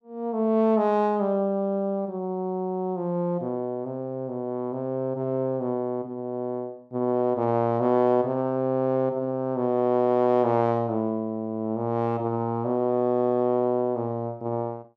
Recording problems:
none

